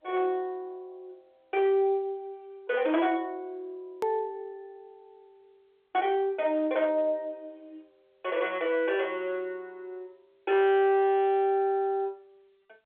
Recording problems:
phone line; 260 Hz to 3.5 kHz, G.711
distortion; hard clipping, signal-to-distortion ratio 11 dB
edit click; at 4 s

